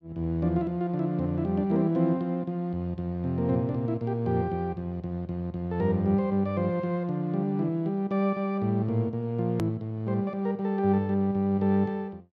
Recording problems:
hard cut with a click; at 9.5 s

